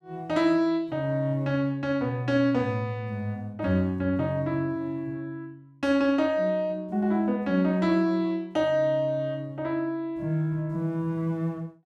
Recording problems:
none

